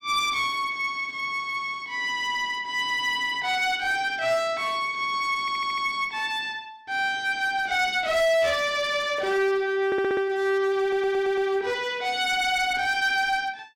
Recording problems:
distorted audio; hard clipping, uneven, signal-to-distortion ratio 10 dB
audio stuttering; at 5.5 s, at 10 s and at 11 s

